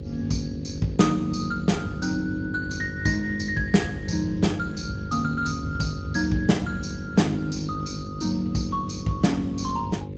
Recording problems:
lossy codec; Speex, log-spectral distance 4 dB, nothing above 18.9 kHz
hum; 50 Hz, harmonics up to 550 Hz, SNR 11 dB
low-frequency rumble; below 120 Hz, SNR 12 dB

